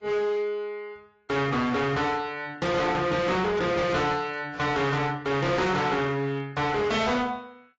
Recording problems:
lossy codec; AAC, log-spectral distance 2 dB, nothing above 7.3 kHz
distorted audio; hard clipping, signal-to-distortion ratio 8 dB

